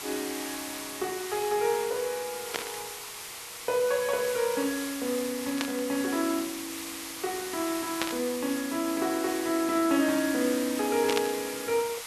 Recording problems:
background hiss; SNR 7 dB
burst of static; 4 times, first at 2.5 s; peak +3 dB vs average level

